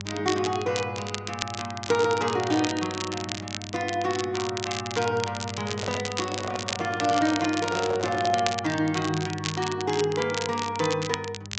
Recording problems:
treble cut off; nothing above 8 kHz
hum; 50 Hz, harmonics up to 600 Hz, SNR 13 dB
crackling; vinyl, SNR 7 dB
microphone handling noise; from 5.5 to 8.5 s; peak -2 dB vs average level

